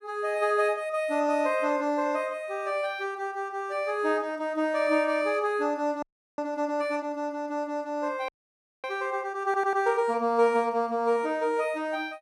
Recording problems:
audio freezing; at 6 s and at 8.5 s for 0.5 s
audio stuttering; at 9.5 s

